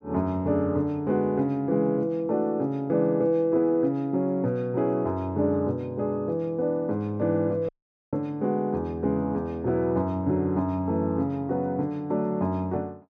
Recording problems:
audio cutting out; at 7.5 s

